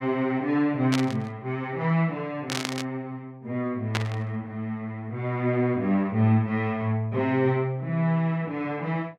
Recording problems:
burst of static; at 1 s, at 2.5 s and at 4 s; peak +3 dB vs average level

